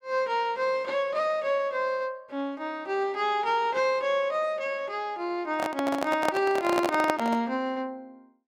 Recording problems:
handling noise; from 5.5 to 7.5 s; peak +4 dB vs average level

